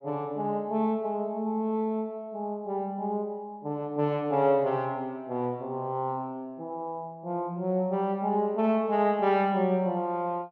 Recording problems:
none

